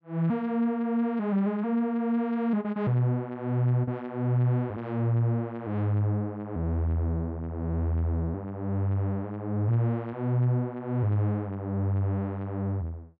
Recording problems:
none

